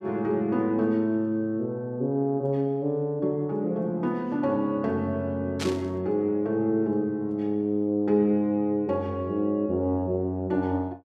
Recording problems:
burst of static; at 5.5 s; peak -2 dB vs average level

